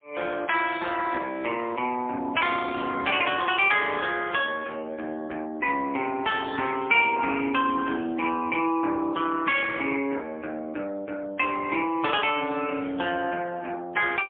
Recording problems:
telephone audio; 260 Hz to 3.5 kHz, AMR-NB, then MP3

